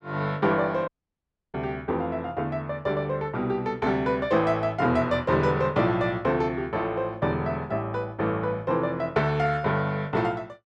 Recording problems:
dropout; at 1 s for 0.5 s

